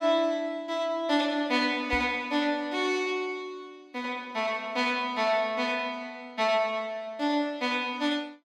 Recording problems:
knock on the microphone; at 2 s; peak -4 dB vs average level

